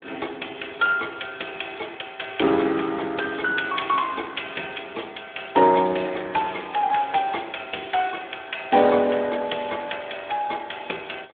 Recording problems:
phone line; 260 Hz to 3.5 kHz, Speex

